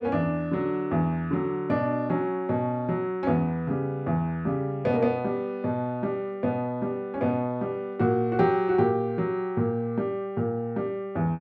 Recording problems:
none

